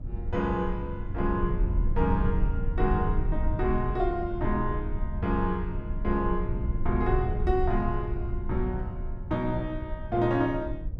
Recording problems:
low-frequency rumble; below 78 Hz, SNR 2 dB

